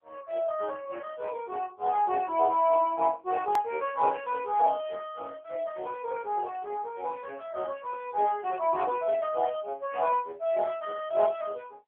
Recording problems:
phone line; 340 Hz to 3.9 kHz, AMR-NB
click at an edit; at 3.5 s

